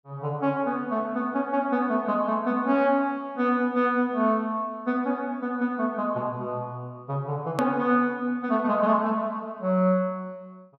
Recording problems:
edit click; at 7.5 s

